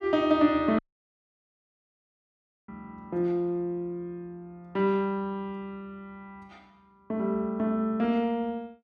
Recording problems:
audio cutting out; at 1 s for 2 s

